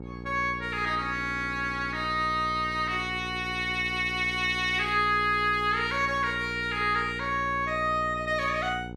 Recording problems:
hum; 60 Hz, harmonics up to 960 Hz, SNR 13 dB

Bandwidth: 14 kHz